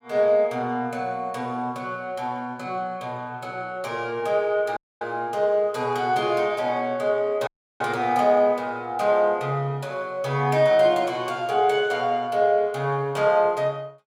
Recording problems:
audio cutting out; at 5 s and at 7.5 s

